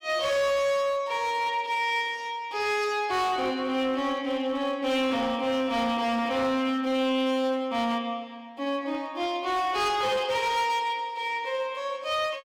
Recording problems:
distortion; hard clipping, signal-to-distortion ratio 11 dB

